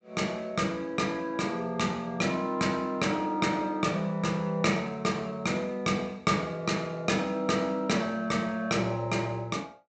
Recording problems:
low-pass filter; nothing above 8 kHz

